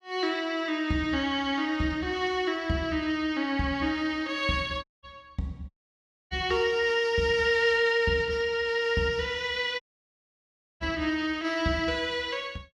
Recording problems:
audio cutting out; at 5 s, at 5.5 s for 0.5 s and at 10 s for 1 s

